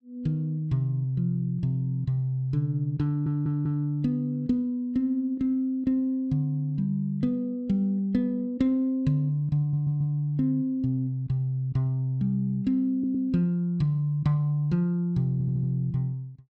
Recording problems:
audio stuttering; 4 times, first at 3 s

